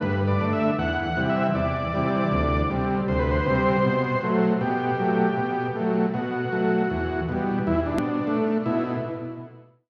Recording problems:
hard cut with a click; at 8 s

